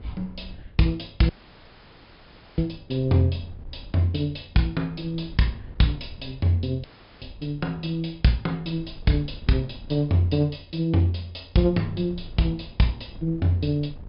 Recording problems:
treble cut off; nothing above 5.5 kHz
wind on the microphone; below 100 Hz, SNR 20 dB
audio cutting out; at 1.5 s for 1.5 s and at 7 s

